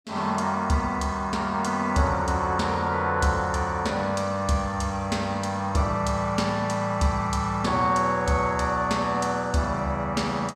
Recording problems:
none

